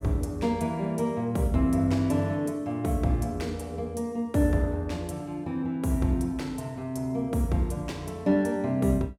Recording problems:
none

